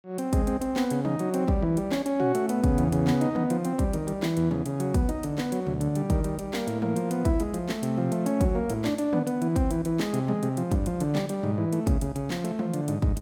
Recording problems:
none

